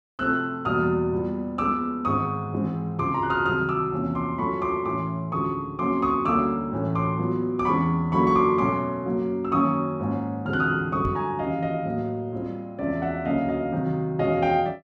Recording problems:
microphone bump; at 11 s; peak -2 dB vs average level

